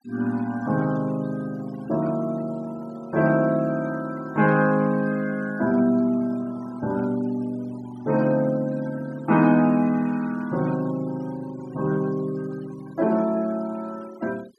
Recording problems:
noise reduction artefacts; signal-to-artefact ratio 23 dB

